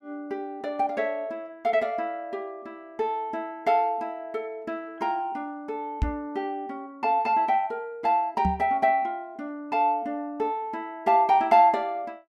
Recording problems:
microphone bump; at 6 s and at 8.5 s; peak +4 dB vs average level

